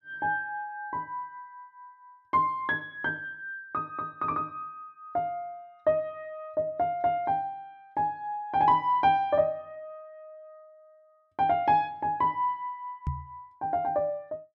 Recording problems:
microphone thump; at 13 s; peak +1 dB vs average level

